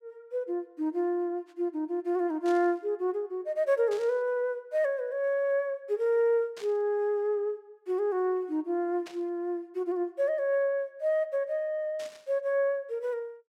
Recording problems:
burst of static; 5 times, first at 2.5 s; peak -12 dB vs average level

